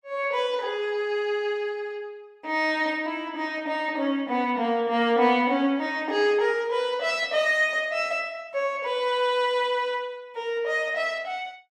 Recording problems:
none

